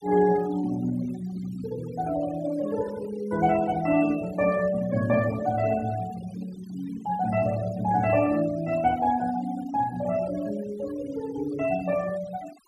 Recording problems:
noise reduction artefacts; signal-to-artefact ratio 18 dB

